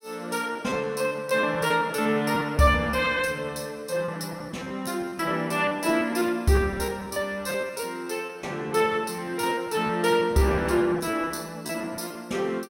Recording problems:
lost packets; 14% of the sound replaced, filled with repeated pitch periods

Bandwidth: 16 kHz